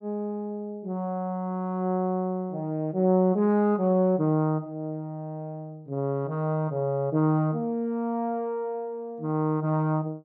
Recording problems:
none

